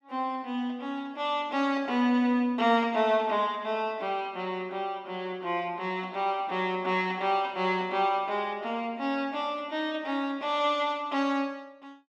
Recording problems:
none

